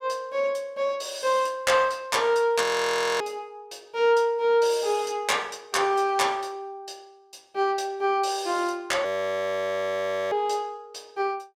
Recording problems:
audio freezing; at 2.5 s for 0.5 s and at 9 s for 1.5 s

